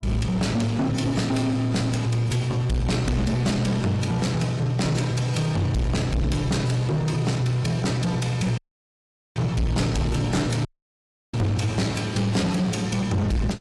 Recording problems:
codec artefacts; AAC, log-spectral distance 2 dB, nothing above 11 kHz
distorted audio; soft clipping, signal-to-distortion ratio 8 dB
audio cutting out; at 8.5 s for 1 s and at 11 s for 0.5 s

